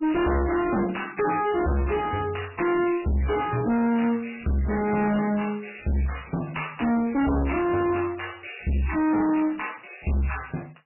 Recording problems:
lossy codec; MP3, log-spectral distance 8 dB, nothing above 2.9 kHz
distortion; hard clipping, uneven, signal-to-distortion ratio 5 dB

